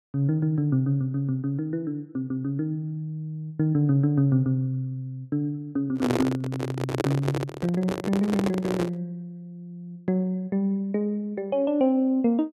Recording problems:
microphone handling noise; from 6 to 9 s; peak +4 dB vs average level

